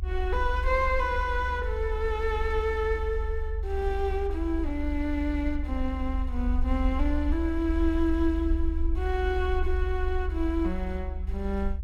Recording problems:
rumble; below 70 Hz, SNR 2 dB

